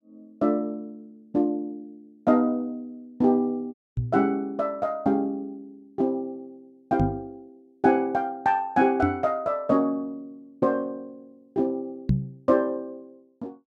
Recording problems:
audio cutting out; at 3.5 s
knock on the microphone; 4 times, first at 4 s; peak +7 dB vs average level

